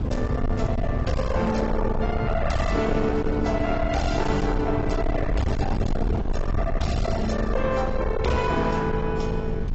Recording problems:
lossy compression; AAC, log-spectral distance 2 dB, nothing above 7.6 kHz
distortion; soft clipping, signal-to-distortion ratio 6 dB
low-frequency rumble; below 200 Hz, SNR 2 dB

